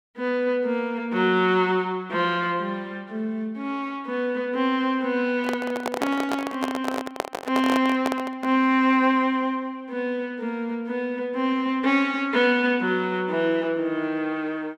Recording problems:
handling noise; from 5.5 to 8.5 s; peak +2 dB vs average level

